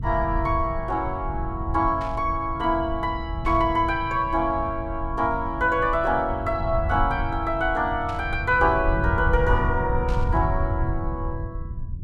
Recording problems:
low-frequency rumble; below 100 Hz, SNR 6 dB
static burst; 4 times, first at 2 s; peak -13 dB vs average level

